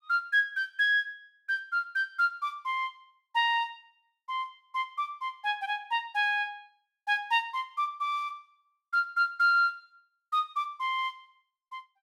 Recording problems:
none

